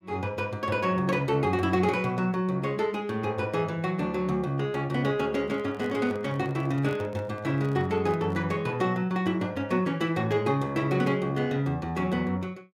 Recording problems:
microphone handling noise; from 5.5 to 8.5 s; peak -10 dB vs average level

